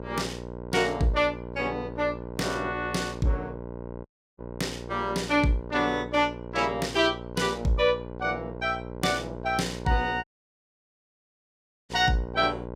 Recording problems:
hum; 60 Hz, harmonics up to 1.6 kHz, SNR 11 dB
dropout; at 4 s and at 10 s for 1.5 s

